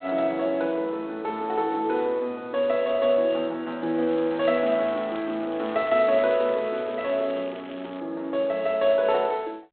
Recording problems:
phone line; 220 Hz to 4 kHz, G.726
crackle; from 4 to 8 s; loose cable, SNR 23 dB

